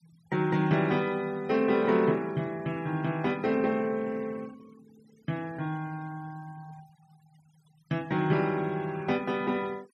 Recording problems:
denoising artefacts; signal-to-artefact ratio 25 dB

